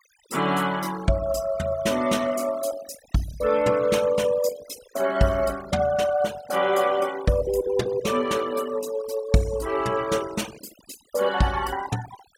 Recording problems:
noise reduction artefacts; signal-to-artefact ratio 18 dB

